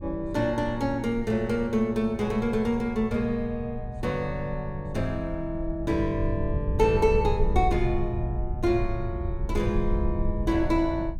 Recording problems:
low-frequency rumble; below 86 Hz, SNR 6 dB

